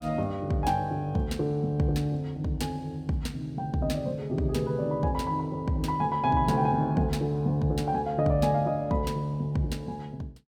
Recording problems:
none

